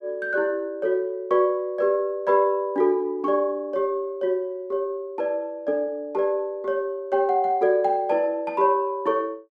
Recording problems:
none

